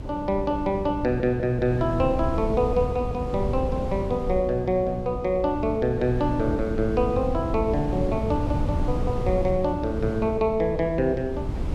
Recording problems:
hum; 60 Hz, harmonics up to 420 Hz, SNR 16 dB
wind on the microphone; below 170 Hz, SNR 6 dB

